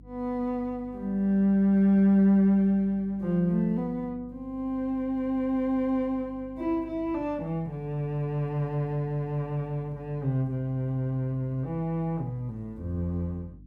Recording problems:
electrical hum; 50 Hz, harmonics up to 300 Hz, SNR 23 dB

